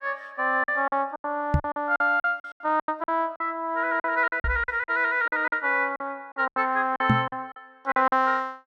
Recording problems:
packet loss; 15% of the sound replaced, filled with silence
microphone thump; at 1.5 s, at 4.5 s and at 7 s; peak +7 dB vs average level

